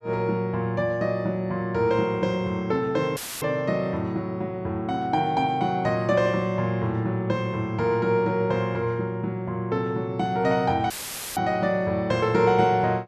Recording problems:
dropout; at 3 s and at 11 s; filled with static

